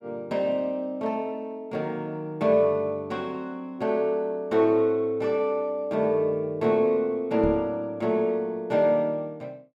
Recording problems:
microphone thump; at 7.5 s; peak -4 dB vs average level

